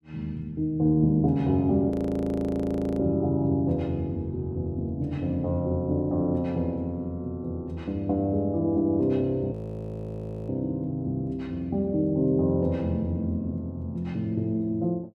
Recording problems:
audio freezing; at 2 s for 1 s and at 9.5 s for 1 s

